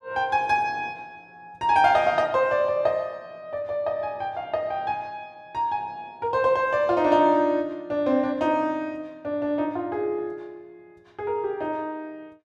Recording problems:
none

